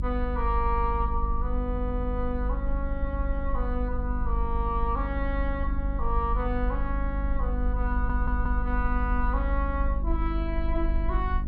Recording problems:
electrical hum; 50 Hz, harmonics up to 650 Hz, SNR 7 dB
low-frequency rumble; below 52 Hz, strongest tone 46 Hz, SNR -1 dB
audio stuttering; at 1.5 s and at 8 s

